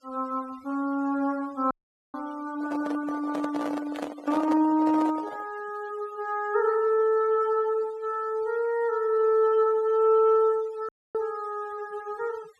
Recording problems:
noise reduction artefacts; signal-to-artefact ratio 24 dB
dropout; at 1.5 s and at 11 s
handling noise; from 2.5 to 5.5 s; peak -3 dB vs average level

